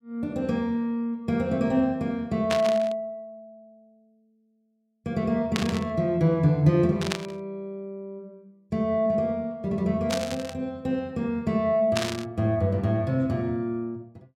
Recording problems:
burst of static; 5 times, first at 2.5 s; peak +2 dB vs average level

